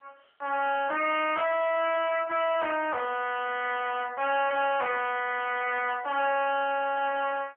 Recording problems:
phone line; 320 Hz to 3.3 kHz, AMR-NB
distorted audio; soft clipping, signal-to-distortion ratio 6 dB

